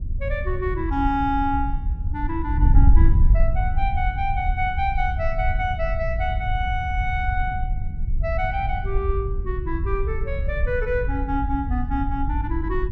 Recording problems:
wind on the microphone; below 72 Hz, SNR -1 dB

